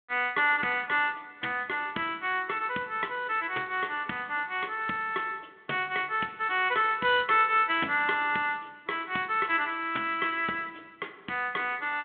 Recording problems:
phone line; 260 Hz to 3.5 kHz, G.726

